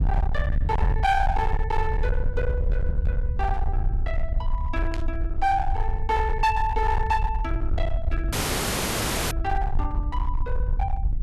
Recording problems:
distortion; hard clipping, signal-to-distortion ratio 8 dB
rumble; below 70 Hz, SNR 0 dB
burst of static; at 5 s; peak -6 dB vs average level
dropout; at 8.5 s for 1 s

